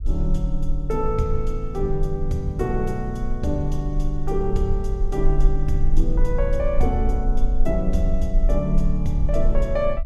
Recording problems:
low-frequency rumble; below 38 Hz, strongest tone 18 Hz, SNR 1 dB

